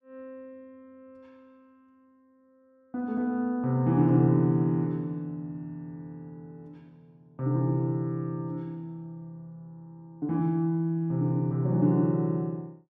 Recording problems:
none

